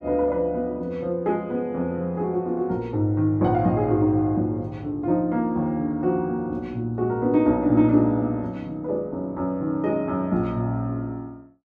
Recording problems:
none

